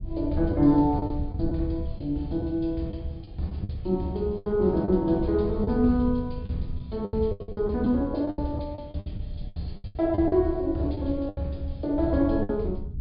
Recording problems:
treble cut off; nothing above 4.9 kHz
rumble; below 110 Hz, SNR 11 dB
lost packets; 11% of the sound replaced, filled with the last packet

